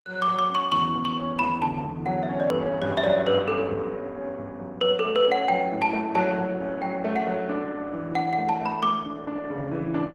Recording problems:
lossy compression; Opus, log-spectral distance 3 dB, nothing above 16.6 kHz
click at an edit; at 2.5 s

